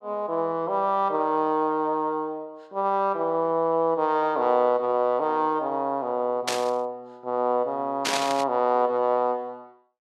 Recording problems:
static burst; at 6.5 s and at 8 s; peak +3 dB vs average level

